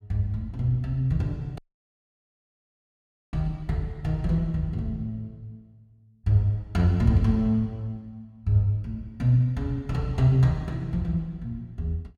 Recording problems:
audio cutting out; at 1.5 s for 2 s

